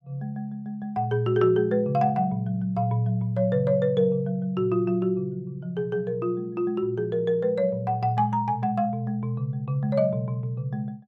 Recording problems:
none

